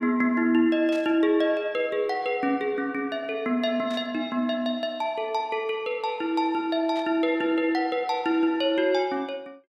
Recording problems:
burst of static; at 1 s, at 4 s and at 7 s; peak -14 dB vs average level

